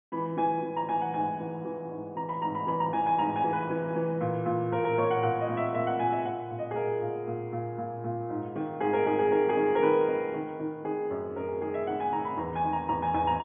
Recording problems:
treble cut off; nothing above 3.4 kHz

